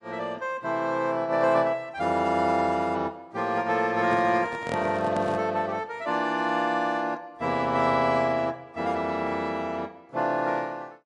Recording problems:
lossy compression; AAC, log-spectral distance 2 dB, nothing above 10.1 kHz
handling noise; from 4 to 5.5 s; peak -2 dB vs average level

